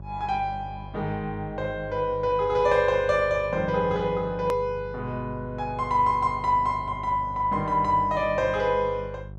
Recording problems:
electrical hum; 50 Hz, harmonics up to 750 Hz, SNR 15 dB
click at an edit; at 4.5 s

